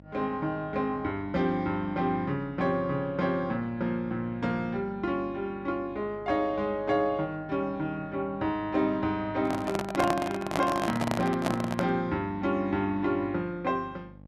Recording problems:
mains hum; 50 Hz, harmonics up to 900 Hz, SNR 21 dB
microphone handling noise; from 9.5 to 12 s; peak +4 dB vs average level

